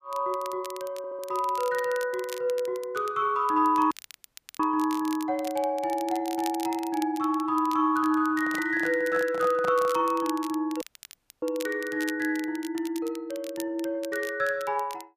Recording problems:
crackle; vinyl, SNR 17 dB
stutter; at 1 s
audio cutting out; at 4 s for 0.5 s and at 11 s for 0.5 s
handling noise; from 8.5 to 10 s; peak -5 dB vs average level

